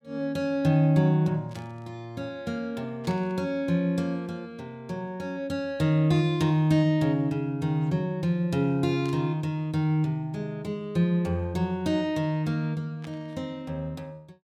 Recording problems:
static burst; 4 times, first at 1.5 s; peak -15 dB vs average level

